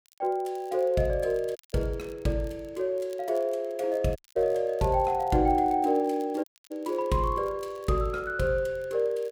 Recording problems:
crackle; vinyl, SNR 30 dB
audio cutting out; at 1.5 s, at 4 s and at 6.5 s

